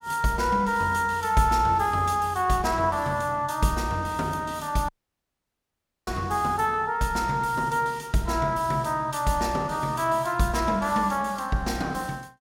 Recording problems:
dropout; at 5 s for 1 s

